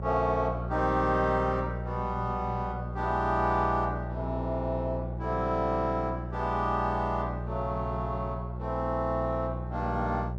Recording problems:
hum; 60 Hz, harmonics up to 780 Hz, SNR 6 dB

